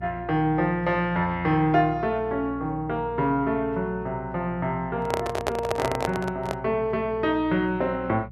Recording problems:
electrical hum; 60 Hz, harmonics up to 360 Hz, SNR 16 dB
handling noise; from 5 to 6.5 s; peak +4 dB vs average level

